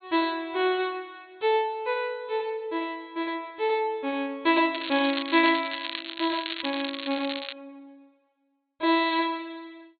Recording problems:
low-pass filter; nothing above 4.4 kHz
crackle; from 4.5 to 7.5 s; loose cable, SNR 7 dB

